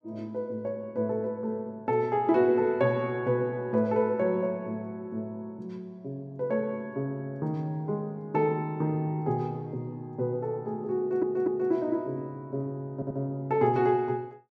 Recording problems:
stutter; at 11 s and at 13 s

